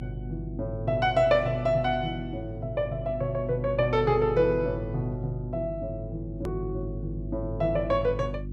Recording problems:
electrical hum; 50 Hz, harmonics up to 350 Hz, SNR 10 dB
hard cut with a click; at 6.5 s

